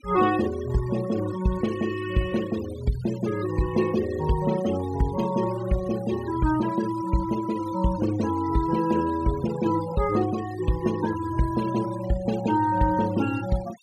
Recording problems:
denoising artefacts; signal-to-artefact ratio 16 dB

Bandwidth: 14 kHz